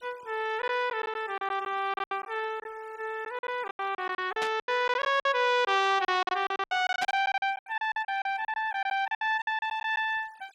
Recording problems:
denoising artefacts; signal-to-artefact ratio 25 dB
lost packets; 15% of the sound replaced, filled with silence
static burst; at 4.5 s and at 7 s; peak -2 dB vs average level

